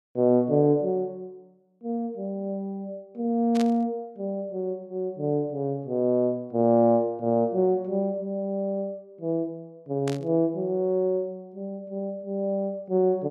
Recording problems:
static burst; at 3.5 s and at 10 s; peak -6 dB vs average level

